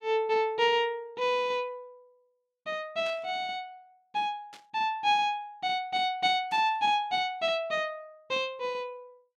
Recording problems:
burst of static; at 3 s, at 4.5 s and at 6.5 s; peak -14 dB vs average level

